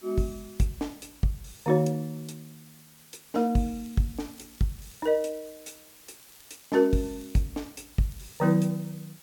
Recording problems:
background hiss; slope 0 dB per octave, SNR 22 dB
crackle; from 4 to 5.5 s, from 6 to 7.5 s and at 8 s; loose cable, SNR 28 dB

